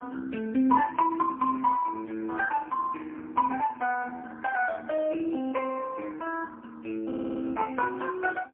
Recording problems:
telephone audio; 220 Hz to 2.2 kHz, AMR-NB, then MP3
audio stuttering; at 7 s

